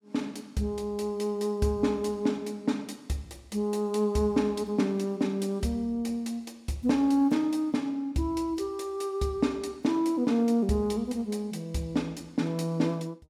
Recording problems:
none

